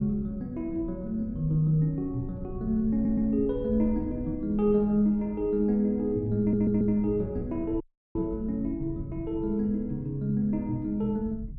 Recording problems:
rumble; below 120 Hz, SNR 14 dB
audio stuttering; at 3 s and at 6.5 s
audio cutting out; at 8 s

